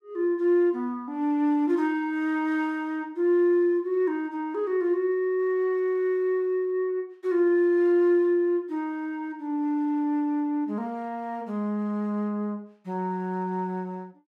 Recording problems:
none

